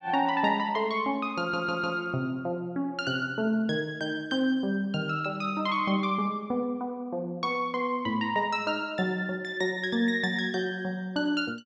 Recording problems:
stutter; at 1.5 s

